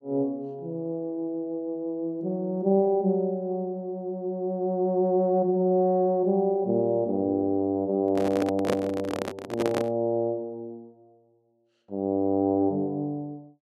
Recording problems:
handling noise; from 8 to 10 s; peak +3 dB vs average level

